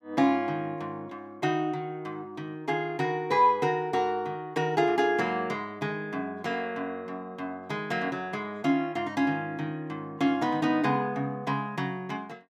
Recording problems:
none

